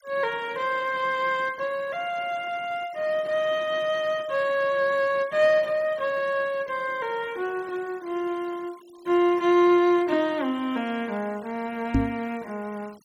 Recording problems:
denoising artefacts; signal-to-artefact ratio 25 dB
microphone bump; at 12 s; peak +6 dB vs average level

